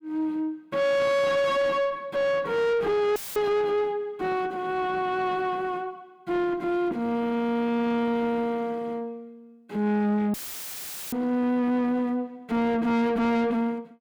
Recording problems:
distorted audio; soft clipping, signal-to-distortion ratio 5 dB
audio cutting out; at 3 s and at 10 s for 1 s; filled with static

